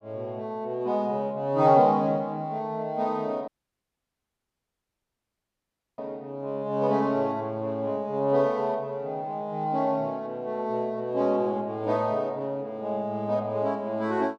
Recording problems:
audio cutting out; at 3.5 s for 2.5 s

